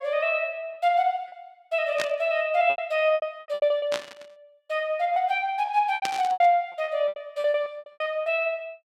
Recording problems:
lost packets; 14% of the sound replaced, filled with repeated pitch periods
static burst; at 2 s, at 4 s and at 6 s; peak 0 dB vs average level

